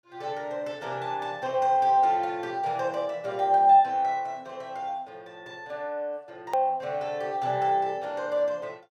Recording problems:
hard cut with a click; at 6.5 s

